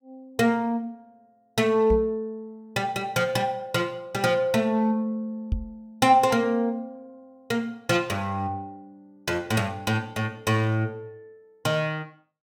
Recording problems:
microphone bump; at 2 s and at 5.5 s; peak +3 dB vs average level

